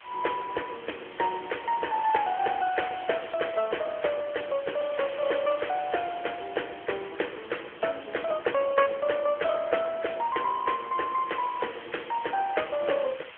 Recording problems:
telephone audio; 340 Hz to 3.2 kHz, AMR-NB
hiss; SNR 16 dB

